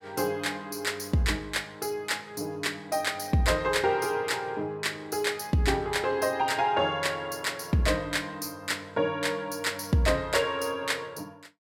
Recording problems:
none

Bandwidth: 17.5 kHz